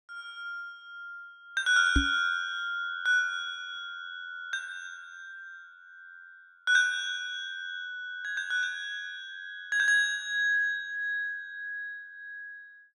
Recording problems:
microphone bump; at 2 s; peak +7 dB vs average level

